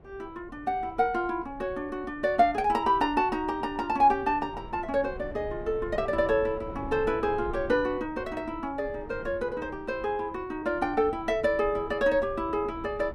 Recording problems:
wind on the microphone; below 320 Hz, SNR 17 dB

